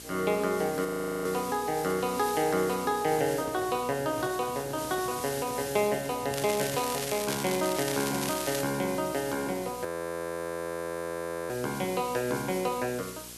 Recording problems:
hum; 60 Hz, harmonics up to 2 kHz, SNR 22 dB
background hiss; slope +2 dB per octave, SNR 10 dB
audio freezing; at 1 s and at 10 s for 1.5 s
handling noise; from 3 to 7 s; peak -9 dB vs average level
crackle; from 6.5 to 8.5 s; loose cable, SNR 6 dB

